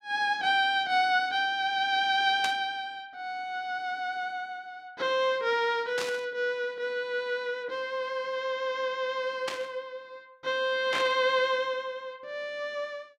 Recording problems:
static burst; 4 times, first at 2.5 s; peak 0 dB vs average level

